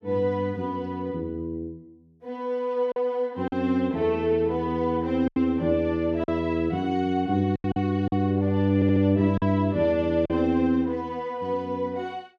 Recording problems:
lost packets; 4% of the sound replaced, filled with silence
stutter; at 9 s

